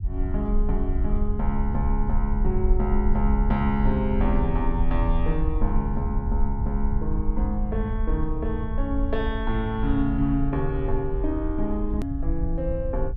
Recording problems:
low-frequency rumble; below 58 Hz, SNR 0 dB
hard cut with a click; at 12 s

